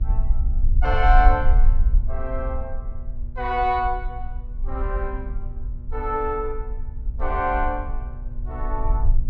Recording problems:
electrical hum; 60 Hz, harmonics up to 840 Hz, SNR 19 dB
low-frequency rumble; below 48 Hz, SNR 1 dB

